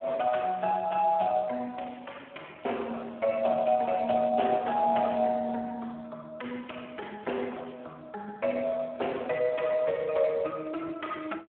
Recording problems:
telephone audio; 280 Hz to 3.3 kHz, Speex

